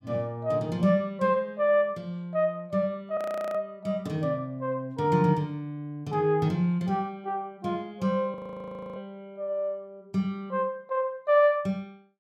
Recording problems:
frozen audio; at 3 s and at 8.5 s for 0.5 s

